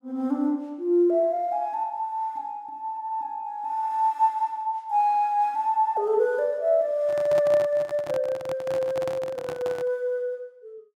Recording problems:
microphone handling noise; from 7 to 10 s; peak -5 dB vs average level

